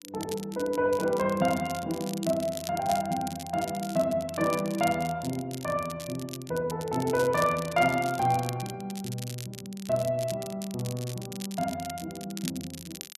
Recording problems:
crackle; vinyl, SNR 13 dB

